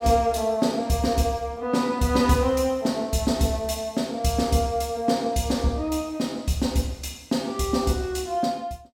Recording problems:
none

